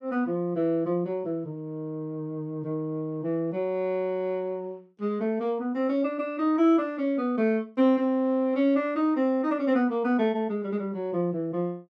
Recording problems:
none

